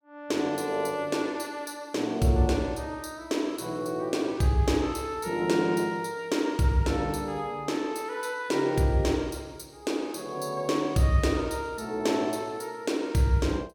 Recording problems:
none

